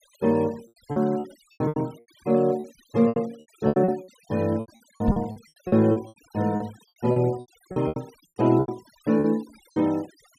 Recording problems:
noise reduction artefacts; signal-to-artefact ratio 25 dB
packet loss; 18% of the sound replaced, filled with repeated pitch periods
knock on the microphone; at 5 s; peak +6 dB vs average level

